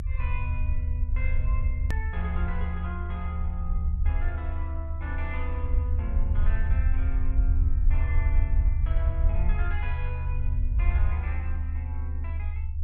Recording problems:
rumble; below 76 Hz, SNR -11 dB
click at an edit; at 2 s

